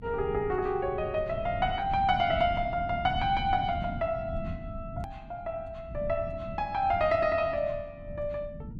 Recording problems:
low-frequency rumble; below 180 Hz, SNR 11 dB
click at an edit; at 5 s

